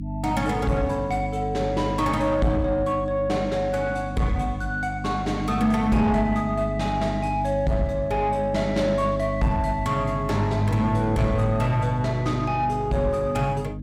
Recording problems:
distorted audio; soft clipping, signal-to-distortion ratio 12 dB
electrical hum; 50 Hz, harmonics up to 300 Hz, SNR 7 dB

